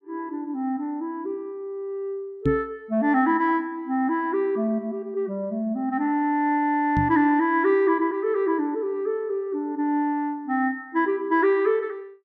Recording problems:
microphone thump; at 2.5 s and at 7 s; peak +4 dB vs average level

